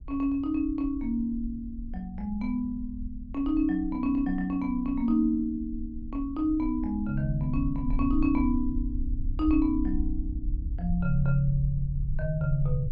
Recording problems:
low-frequency rumble; below 60 Hz, SNR 8 dB

